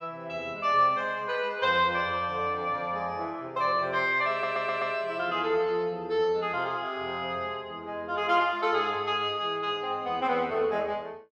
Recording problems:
stutter; at 4.5 s

